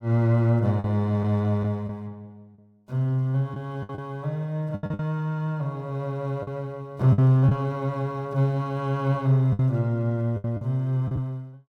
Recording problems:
lost packets; 6% of the sound replaced, filled with the last packet

